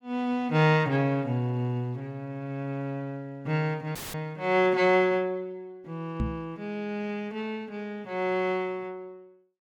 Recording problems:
dropout; at 4 s; filled with static
knock on the microphone; at 6 s; peak +2 dB vs average level

